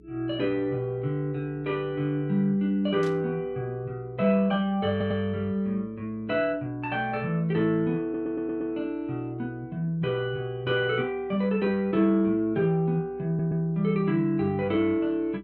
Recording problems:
hum; 60 Hz, harmonics up to 420 Hz, SNR 27 dB
static burst; at 3 s; peak -12 dB vs average level
audio stuttering; at 5 s, at 8 s and at 13 s

